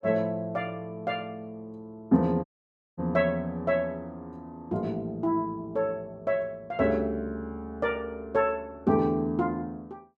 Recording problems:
dropout; at 2.5 s for 0.5 s

